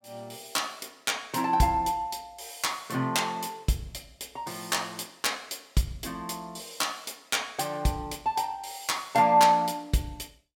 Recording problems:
none

